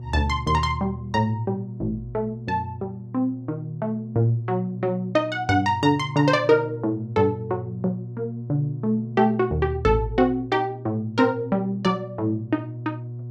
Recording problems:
electrical hum; 60 Hz, harmonics up to 360 Hz, SNR 12 dB

